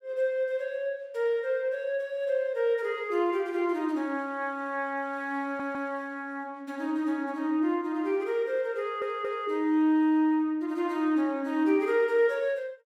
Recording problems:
audio stuttering; at 5.5 s and at 9 s

